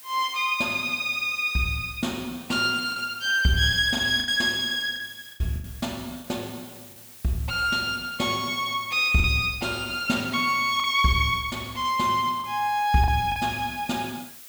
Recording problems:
hiss; slope +2 dB per octave, SNR 20 dB
lost packets; 4% of the sound replaced, filled with the last packet

